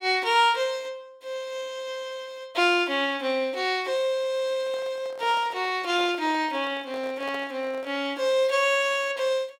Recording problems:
handling noise; from 4.5 to 8 s; peak -10 dB vs average level

